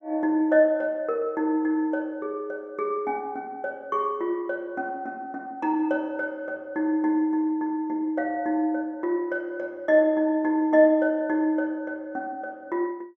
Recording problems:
none

